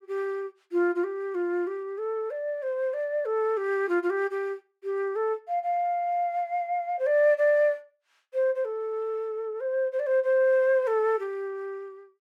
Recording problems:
none

